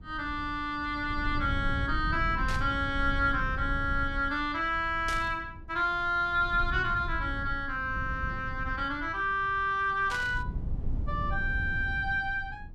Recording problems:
rumble; below 100 Hz, SNR 8 dB
burst of static; at 2.5 s, at 5 s and at 10 s; peak -5 dB vs average level

